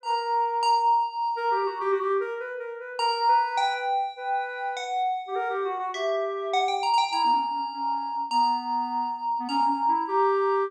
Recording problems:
none

